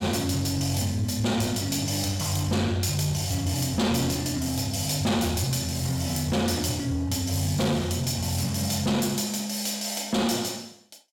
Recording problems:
distortion; soft clipping, signal-to-distortion ratio 11 dB

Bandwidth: 17 kHz